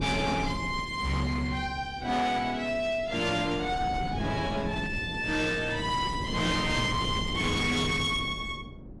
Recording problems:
codec artefacts; AAC, log-spectral distance 3 dB, nothing above 11.3 kHz
distorted audio; hard clipping, signal-to-distortion ratio 11 dB
wind noise; below 310 Hz, SNR 9 dB

